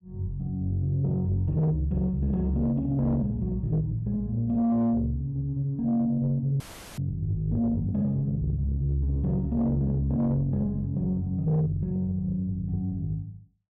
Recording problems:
distorted audio; soft clipping, signal-to-distortion ratio 12 dB
audio cutting out; at 6.5 s; filled with static

